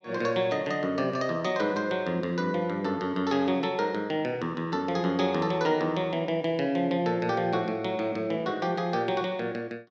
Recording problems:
none

